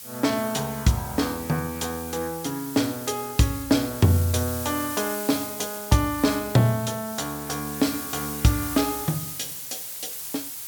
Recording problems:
hiss; slope +2 dB per octave, SNR 8 dB

